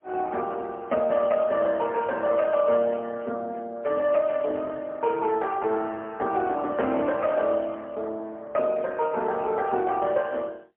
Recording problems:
phone line; 260 Hz to 3.1 kHz, AMR-NB, then MP3

